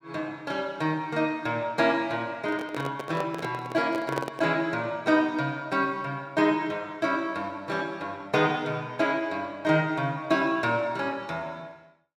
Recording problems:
microphone handling noise; from 2.5 to 4.5 s; peak +1 dB vs average level

